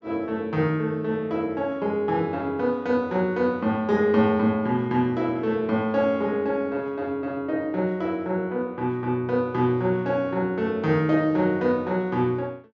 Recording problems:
treble cut off; nothing above 8 kHz

